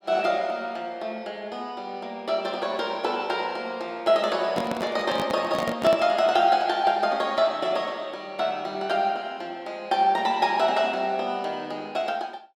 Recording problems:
microphone handling noise; from 4.5 to 6 s; peak 0 dB vs average level

